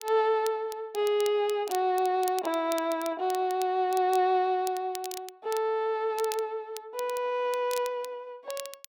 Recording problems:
crackle; vinyl, SNR 16 dB

